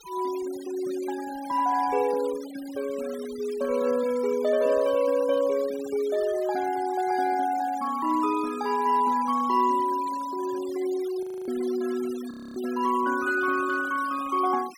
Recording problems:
noise reduction artefacts; signal-to-artefact ratio 18 dB
audio freezing; at 11 s and at 12 s

